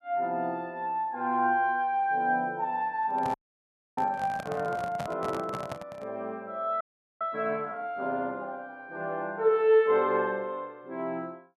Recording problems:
handling noise; from 3 to 6 s; peak -3 dB vs average level
frozen audio; at 3.5 s for 0.5 s and at 7 s

